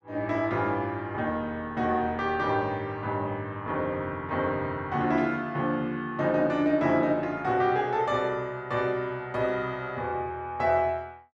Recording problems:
none

